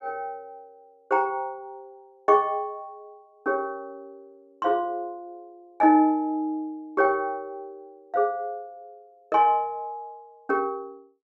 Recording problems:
none

